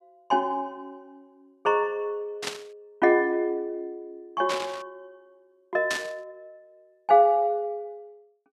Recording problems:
burst of static; at 2.5 s, at 4.5 s and at 6 s; peak 0 dB vs average level

